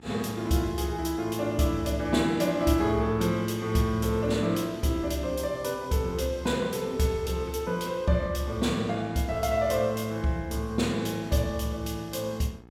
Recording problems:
hum; 60 Hz, harmonics up to 2.1 kHz, SNR 23 dB

